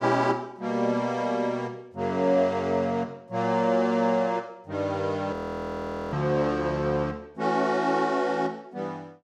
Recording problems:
frozen audio; at 5.5 s for 1 s

